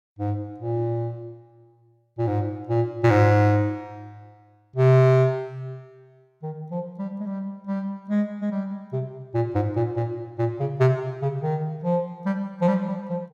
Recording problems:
none

